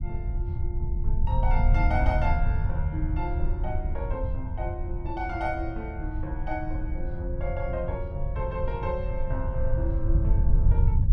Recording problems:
low-frequency rumble; below 82 Hz, SNR -5 dB

